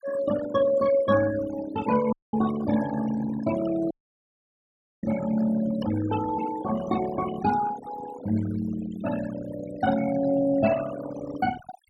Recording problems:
denoising artefacts; signal-to-artefact ratio 11 dB
dropout; at 2 s and at 4 s for 1 s

